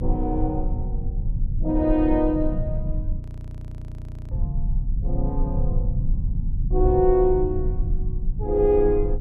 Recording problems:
low-frequency rumble; below 80 Hz, SNR 5 dB
audio freezing; at 3 s for 1 s

